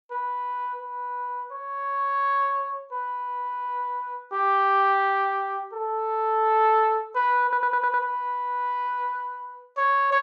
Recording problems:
stutter; at 7.5 s

